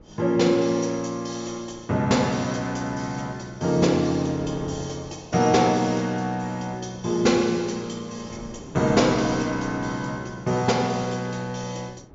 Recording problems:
low-pass filter; nothing above 7.4 kHz
wind noise; below 460 Hz, SNR 21 dB

